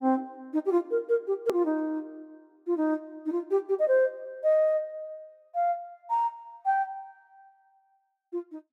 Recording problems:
click at an edit; at 1.5 s

